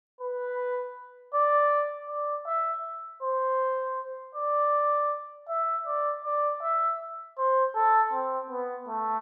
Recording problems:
none

